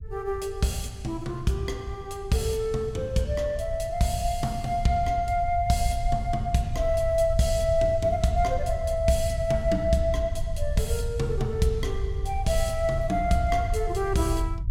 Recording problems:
low-frequency rumble; below 82 Hz, SNR 7 dB

